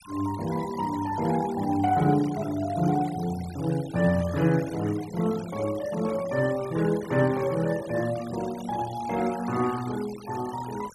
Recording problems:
denoising artefacts; signal-to-artefact ratio 17 dB

